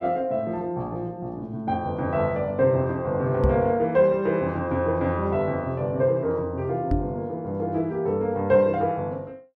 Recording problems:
microphone bump; at 3.5 s and at 7 s; peak +5 dB vs average level

